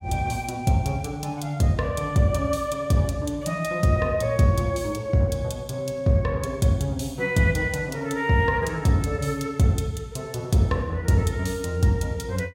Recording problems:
none

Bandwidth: 16.5 kHz